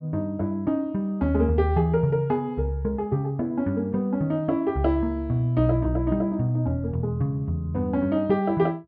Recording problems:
low-pass filter; nothing above 5.5 kHz

